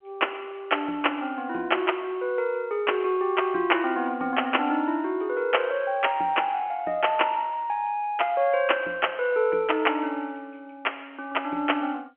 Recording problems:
telephone audio; 240 Hz to 3.2 kHz, G.711

